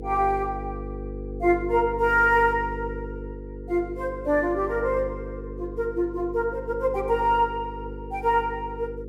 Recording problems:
mains hum; 50 Hz, harmonics up to 500 Hz, SNR 11 dB

